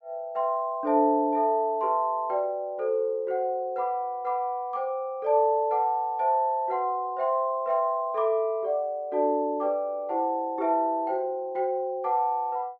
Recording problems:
none

